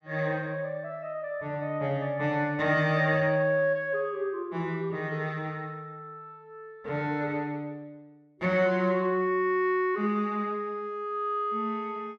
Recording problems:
none

